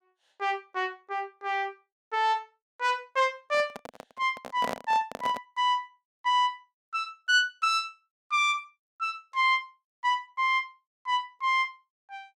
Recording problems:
handling noise; from 3.5 to 5.5 s; peak -1 dB vs average level

